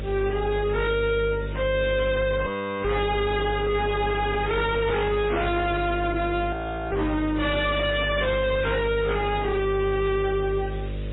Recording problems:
lossy codec; MP3, then AAC, log-spectral distance 7 dB, nothing above 3.8 kHz
distortion; hard clipping, signal-to-distortion ratio 5 dB
hum; 50 Hz, harmonics up to 600 Hz, SNR 8 dB
hiss; SNR 23 dB
burst of static; 4 times, first at 1.5 s; peak -13 dB vs average level
frozen audio; at 2.5 s and at 6.5 s

